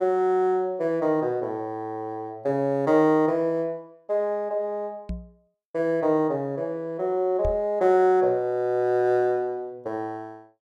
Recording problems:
microphone thump; at 5 s and at 7.5 s; peak -4 dB vs average level

